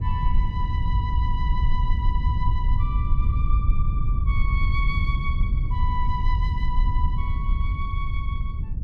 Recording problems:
low-frequency rumble; below 76 Hz, SNR -9 dB

